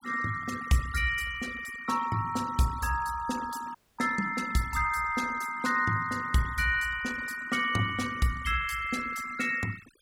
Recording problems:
noise reduction artefacts; signal-to-artefact ratio 15 dB
audio freezing; at 4 s

